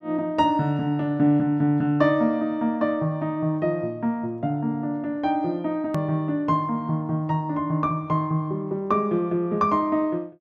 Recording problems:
click at an edit; at 6 s

